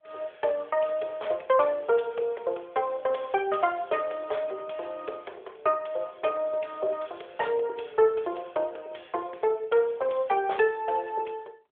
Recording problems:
phone line; 340 Hz to 3.4 kHz, AMR-NB

